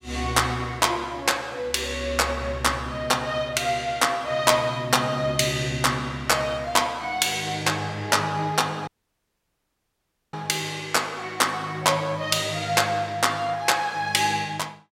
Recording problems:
dropout; at 9 s for 1.5 s

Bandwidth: 16 kHz